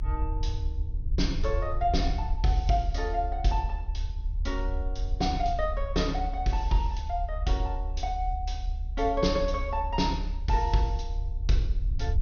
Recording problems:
low-pass filter; nothing above 6.4 kHz
rumble; below 70 Hz, strongest tone 38 Hz, SNR 3 dB

